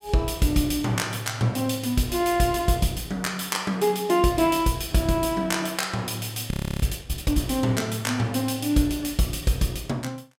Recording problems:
audio freezing; at 6.5 s

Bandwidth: 16 kHz